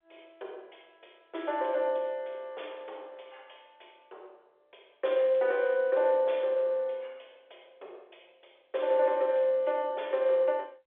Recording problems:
phone line; 340 Hz to 3.8 kHz, G.711

